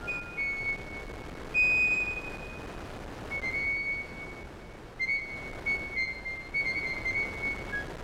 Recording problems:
wind on the microphone; below 1.2 kHz, SNR 13 dB

